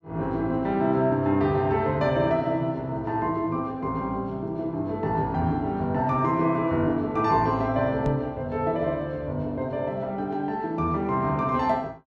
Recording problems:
microphone thump; at 8 s; peak +2 dB vs average level

